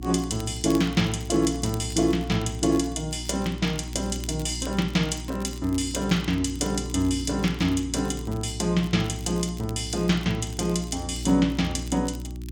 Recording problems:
electrical hum; 60 Hz, harmonics up to 360 Hz, SNR 10 dB
crackle; vinyl, SNR 21 dB

